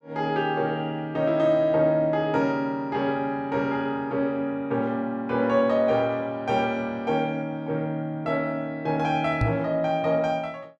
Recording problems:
knock on the microphone; at 9.5 s; peak +4 dB vs average level

